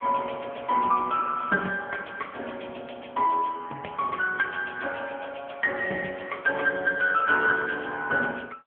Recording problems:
telephone audio; 300 Hz to 2.8 kHz, AMR-NB

